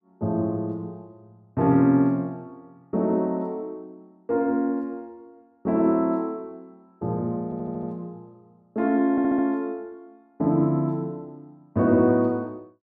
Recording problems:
stutter; at 7.5 s and at 9 s

